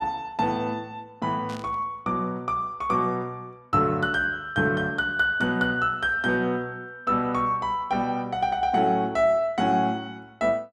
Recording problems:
burst of static; at 1.5 s; peak -14 dB vs average level

